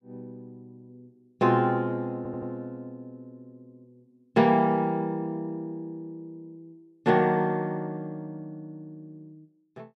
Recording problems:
audio stuttering; at 2 s

